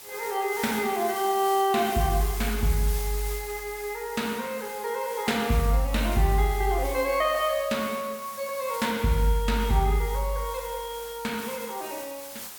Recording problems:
hiss; SNR 11 dB

